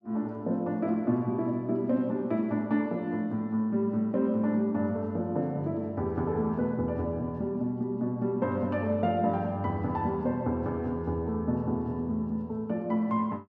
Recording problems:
none

